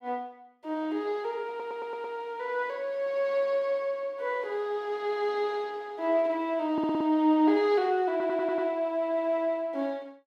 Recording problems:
audio stuttering; at 1.5 s, at 6.5 s and at 8 s

